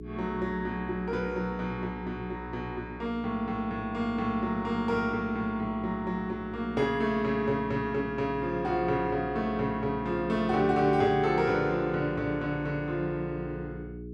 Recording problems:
hum; 60 Hz, harmonics up to 420 Hz, SNR 12 dB

